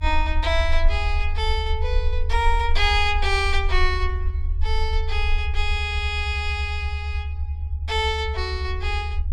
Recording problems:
low-frequency rumble; below 74 Hz, strongest tone 20 Hz, SNR 1 dB

